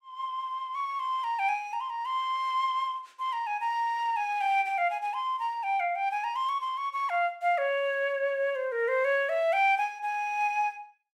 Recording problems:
none

